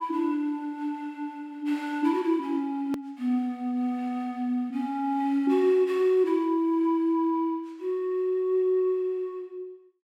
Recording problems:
click at an edit; at 3 s

